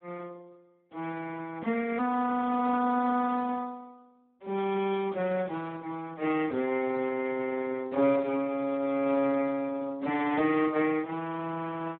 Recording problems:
telephone audio; 220 Hz to 2.7 kHz, Speex

